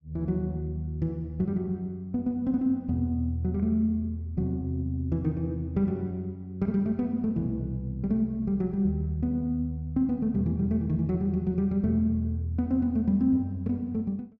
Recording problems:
none

